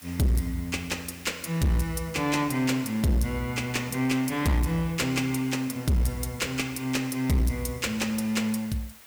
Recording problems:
distortion; hard clipping, uneven, signal-to-distortion ratio 9 dB
background hiss; SNR 20 dB

